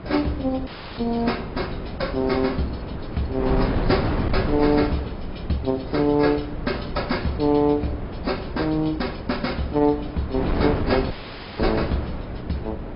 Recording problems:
treble missing; nothing above 5.2 kHz
lossy compression; AAC, log-spectral distance 3 dB
hum; 60 Hz, harmonics up to 420 Hz, SNR 18 dB
wind on the microphone; below 420 Hz, SNR 6 dB
dropout; at 0.5 s and at 11 s

